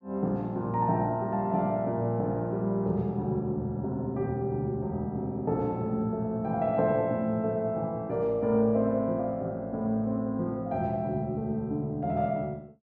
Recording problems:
none

